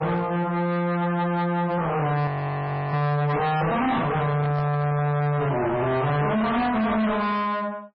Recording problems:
lossy compression; MP3, log-spectral distance 2 dB, nothing above 4.5 kHz
distortion; soft clipping, signal-to-distortion ratio 6 dB
audio freezing; at 2.5 s for 0.5 s
handling noise; from 3.5 to 6 s; peak -5 dB vs average level

